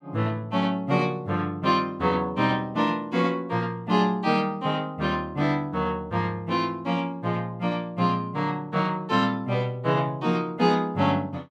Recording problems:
none

